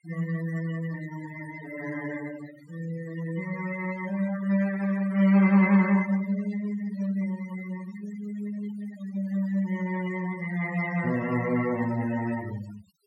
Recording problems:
noise reduction artefacts; signal-to-artefact ratio 15 dB

